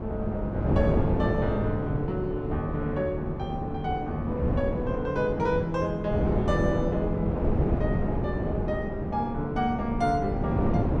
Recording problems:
wind on the microphone; below 350 Hz, SNR 0 dB

